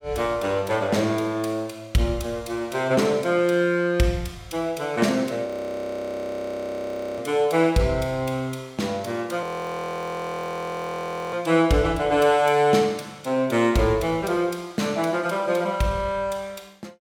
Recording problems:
frozen audio; at 5.5 s for 1.5 s and at 9.5 s for 2 s

